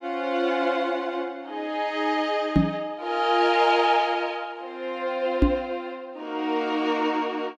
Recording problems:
knock on the microphone; at 2.5 s and at 5.5 s; peak +9 dB vs average level

